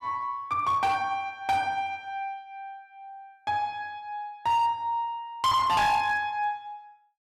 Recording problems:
distorted audio; hard clipping, signal-to-distortion ratio 7 dB

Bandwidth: 15.5 kHz